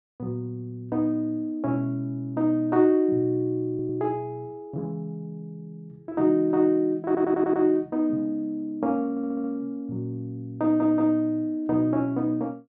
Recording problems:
stutter; 4 times, first at 3.5 s

